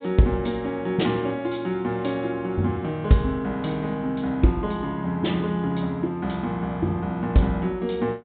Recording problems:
low-pass filter; nothing above 4 kHz

